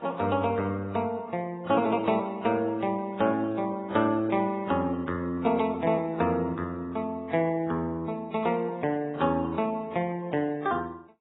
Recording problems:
lossy compression; Vorbis, then AAC, log-spectral distance 2 dB, nothing above 3.8 kHz

